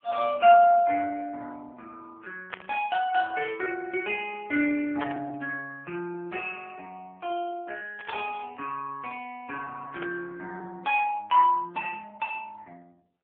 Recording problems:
phone line; 260 Hz to 3.5 kHz, AMR-NB
lost packets; 6% of the sound replaced, filled with repeated pitch periods
burst of static; 4 times, first at 2.5 s; peak -2 dB vs average level

